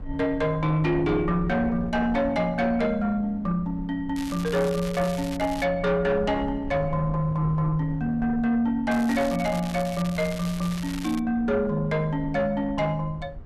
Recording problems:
distorted audio; soft clipping, signal-to-distortion ratio 12 dB
wind noise; below 120 Hz, SNR 15 dB
crackle; from 4 to 5.5 s and from 9 to 11 s; loose cable, SNR 15 dB

